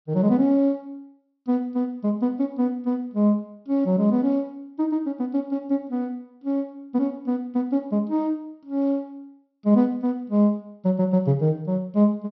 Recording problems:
low-pass filter; nothing above 5.8 kHz

